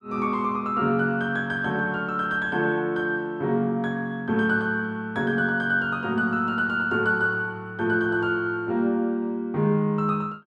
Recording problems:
none

